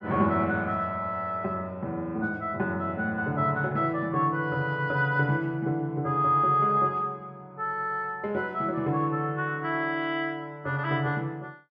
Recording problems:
none

